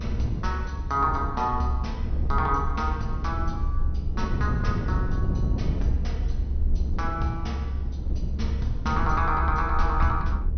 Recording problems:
treble missing; nothing above 6.2 kHz
rumble; below 70 Hz, SNR 3 dB
wind on the microphone; below 150 Hz, SNR 4 dB

